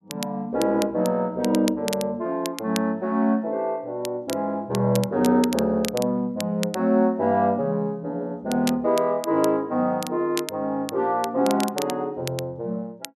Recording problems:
crackling; vinyl, SNR 13 dB

